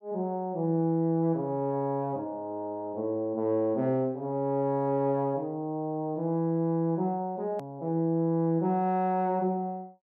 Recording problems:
hard cut with a click; at 7.5 s

